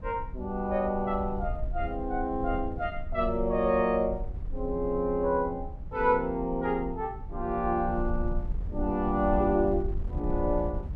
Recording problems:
wind on the microphone; below 68 Hz, SNR 9 dB

